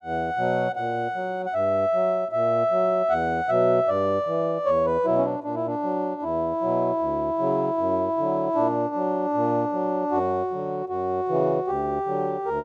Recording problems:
none

